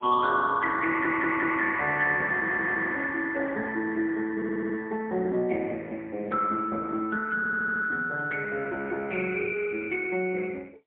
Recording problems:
telephone audio; 260 Hz to 2.3 kHz, AMR-NB, then MP3
audio stuttering; 4 times, first at 1 s

